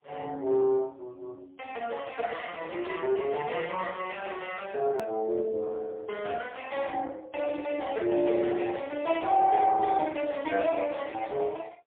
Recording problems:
telephone audio; 300 Hz to 3.4 kHz, AMR-NB, then MP3
hard cut with a click; at 5 s

